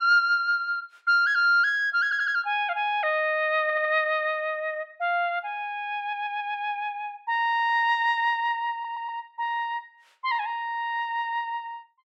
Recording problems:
audio stuttering; 4 times, first at 2 s

